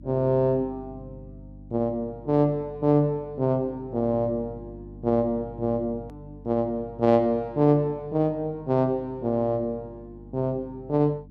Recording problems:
hum; 50 Hz, harmonics up to 300 Hz, SNR 20 dB
click at an edit; at 6 s

